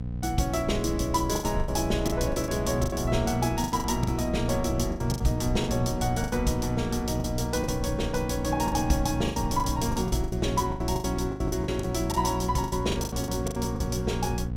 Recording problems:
electrical hum; 60 Hz, harmonics up to 540 Hz, SNR 6 dB
low-frequency rumble; below 96 Hz, SNR 10 dB
packet loss; 14% of the sound replaced, filled with the last packet

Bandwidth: 16.5 kHz